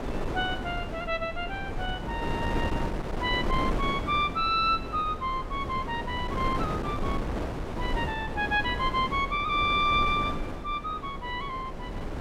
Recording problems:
wind noise; below 510 Hz, SNR 5 dB

